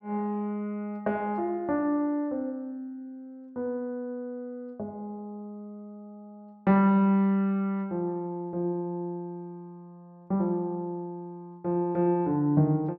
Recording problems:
none

